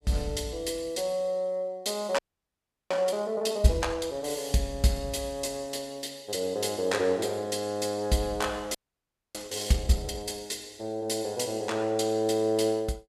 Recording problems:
frozen audio; at 2 s for 0.5 s and at 9 s for 0.5 s

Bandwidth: 14.5 kHz